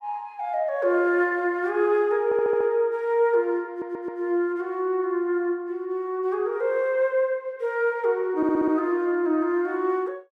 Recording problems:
audio stuttering; at 2 s, at 3.5 s and at 8.5 s

